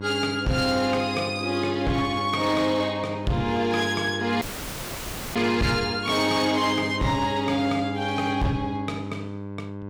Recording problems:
distorted audio; hard clipping, signal-to-distortion ratio 12 dB
electrical hum; 50 Hz, harmonics up to 1.5 kHz, SNR 10 dB
dropout; at 4.5 s for 1 s

